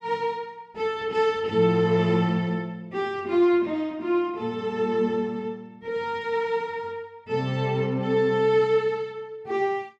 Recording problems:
none

